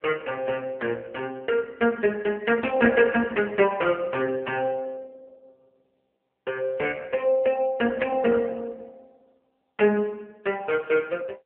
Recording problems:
telephone audio; 280 Hz to 3.1 kHz, AMR-NB

